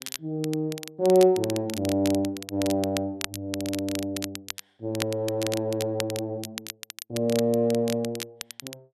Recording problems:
crackling; vinyl, SNR 10 dB

